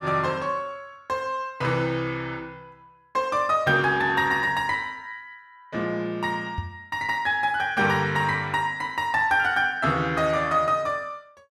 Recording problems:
knock on the microphone; at 6.5 s; peak -3 dB vs average level

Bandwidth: 15 kHz